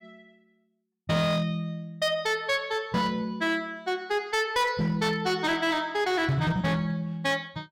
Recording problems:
distortion; hard clipping, signal-to-distortion ratio 10 dB

